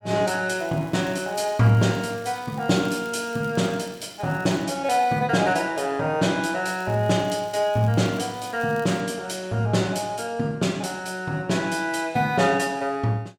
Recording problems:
crackling; from 0.5 to 4.5 s and from 6.5 to 9 s; loose cable, SNR 25 dB

